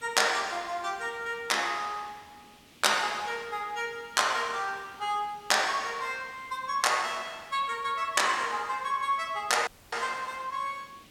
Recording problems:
hiss; SNR 25 dB
dropout; at 9.5 s

